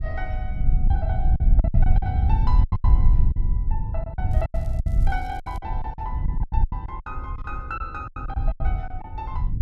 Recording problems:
rumble; below 72 Hz, SNR -11 dB
lost packets; 14% of the sound replaced, filled with silence
crackle; from 4.5 to 5.5 s; loose cable, SNR 22 dB

